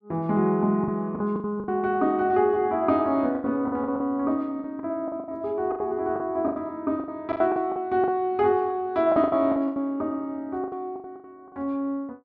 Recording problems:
lost packets; 13% of the sound replaced, filled with the last packet

